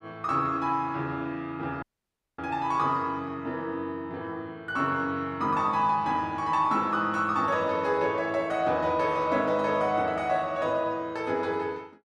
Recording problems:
dropout; at 2 s for 0.5 s

